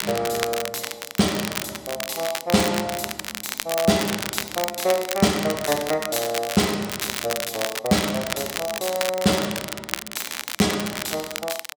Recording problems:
crackling; vinyl, SNR 5 dB

